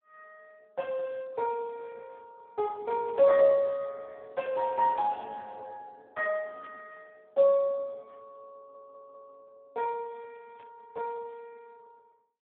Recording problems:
telephone audio; 190 Hz to 3.3 kHz, Speex
burst of static; 4 times, first at 3 s; peak -20 dB vs average level
audio stuttering; at 8.5 s

